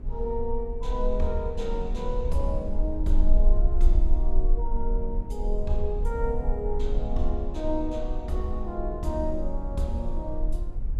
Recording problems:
low-frequency rumble; below 36 Hz, strongest tone 18 Hz, SNR -1 dB
wind noise; below 100 Hz, SNR 8 dB

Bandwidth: 14.5 kHz